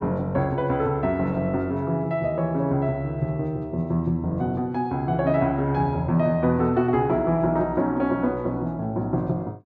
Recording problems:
none

